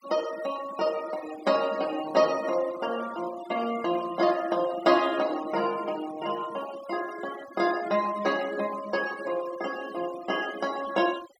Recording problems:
noise reduction artefacts; signal-to-artefact ratio 16 dB

